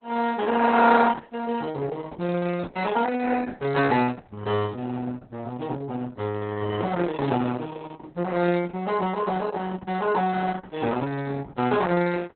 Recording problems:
lossy compression; Opus, log-spectral distance 4 dB, nothing above 4 kHz

